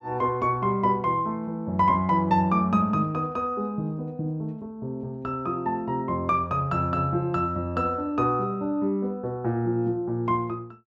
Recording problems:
none

